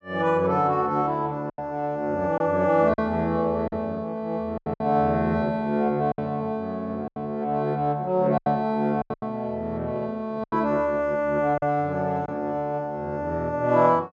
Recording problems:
packet loss; 6% of the sound replaced, filled with silence

